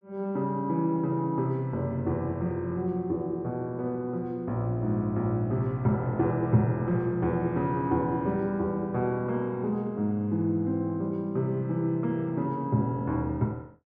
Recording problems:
none

